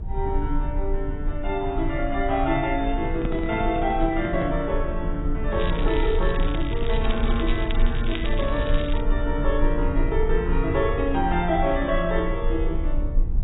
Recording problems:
codec artefacts; AAC, log-spectral distance 3 dB, nothing above 3.2 kHz
rumble; below 50 Hz, strongest tone 26 Hz, SNR 3 dB
handling noise; from 3 to 4.5 s; peak 0 dB vs average level
crackling; from 5.5 to 9 s; loose cable, SNR 11 dB

